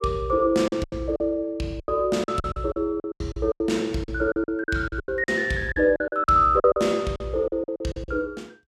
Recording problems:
lost packets; 17% of the sound replaced, filled with silence

